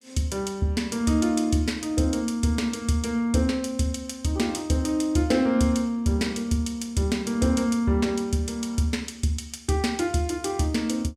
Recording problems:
none

